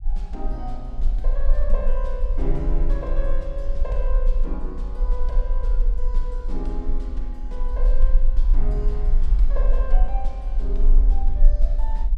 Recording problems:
rumble; below 38 Hz, strongest tone 20 Hz, SNR -10 dB

